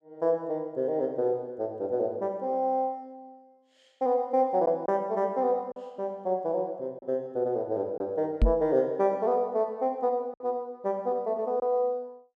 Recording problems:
packet loss; 1.7% of the sound replaced, filled with silence
knock on the microphone; at 8.5 s; peak +8 dB vs average level

